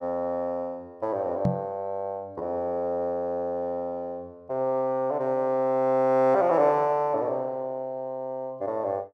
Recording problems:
knock on the microphone; at 1.5 s; peak +5 dB vs average level

